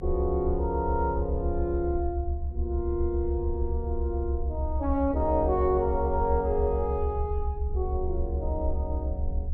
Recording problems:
rumble; below 72 Hz, SNR 2 dB

